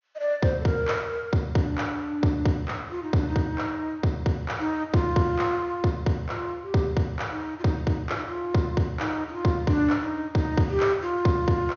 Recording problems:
treble missing; nothing above 6.6 kHz

